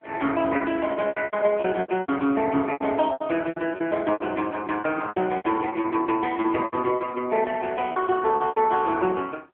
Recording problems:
telephone audio; 280 Hz to 3.3 kHz, AMR-NB
packet loss; 15% of the sound replaced, filled with repeated pitch periods

